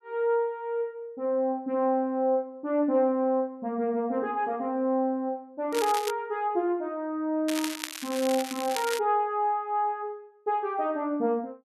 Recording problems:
crackle; at 5.5 s and from 7.5 to 9 s; loose cable, SNR 8 dB

